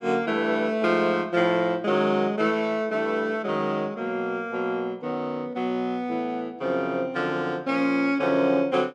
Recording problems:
none

